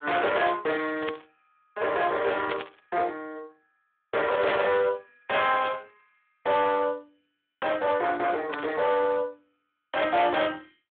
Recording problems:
telephone audio; 320 Hz to 3.6 kHz, Speex
distorted audio; hard clipping, signal-to-distortion ratio 8 dB
burst of static; 4 times, first at 1 s; peak -2 dB vs average level

